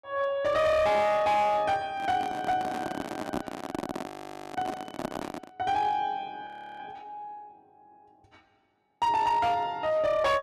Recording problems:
distortion; hard clipping, signal-to-distortion ratio 11 dB
microphone handling noise; from 2 to 5.5 s; peak 0 dB vs average level
frozen audio; at 4 s and at 6.5 s

